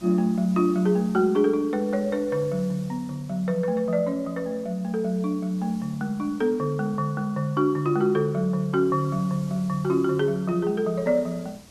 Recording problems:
hiss; SNR 24 dB

